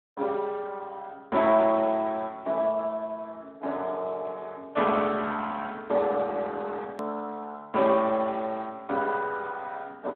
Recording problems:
telephone audio; 260 Hz to 2.9 kHz, Speex
hard cut with a click; at 7 s

